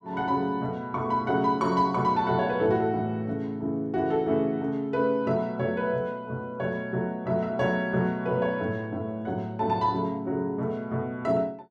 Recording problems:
none

